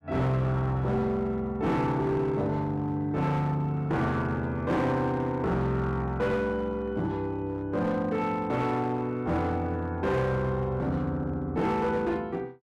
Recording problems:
distorted audio; hard clipping, uneven, signal-to-distortion ratio 10 dB

